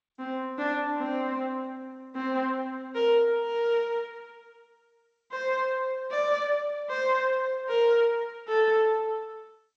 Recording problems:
lossy codec; MP2, then G.722, log-spectral distance 2 dB

